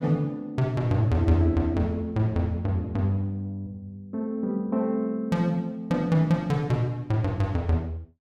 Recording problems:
none

